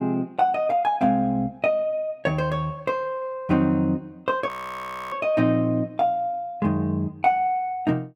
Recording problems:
audio freezing; at 4.5 s for 0.5 s

